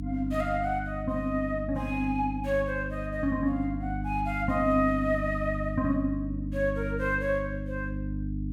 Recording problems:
mains hum; 50 Hz, harmonics up to 300 Hz, SNR 5 dB

